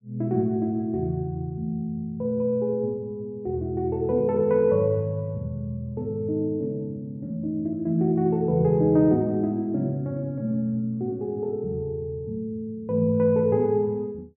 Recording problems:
treble cut off; nothing above 3.2 kHz

